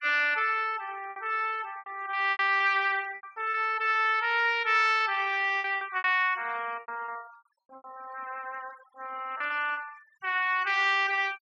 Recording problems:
denoising artefacts; signal-to-artefact ratio 24 dB
packet loss; 8% of the sound replaced, filled with repeated pitch periods

